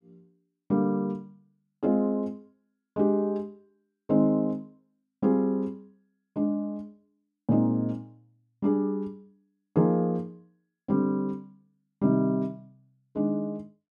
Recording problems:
none

